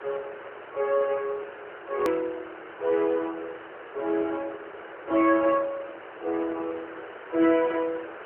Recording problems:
telephone audio; 280 Hz to 3.3 kHz, AMR-NB
hiss; SNR 15 dB
click at an edit; at 2 s

